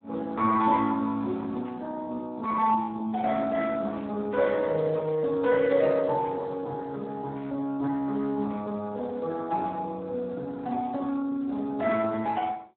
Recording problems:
telephone audio; 170 Hz to 4 kHz, Speex

